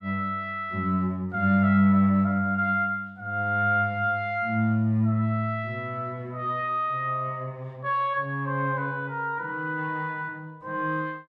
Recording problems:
none

